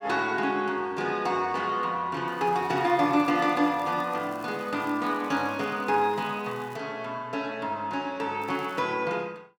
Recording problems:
crackle; from 2.5 to 7 s and at 8.5 s; loose cable, SNR 28 dB

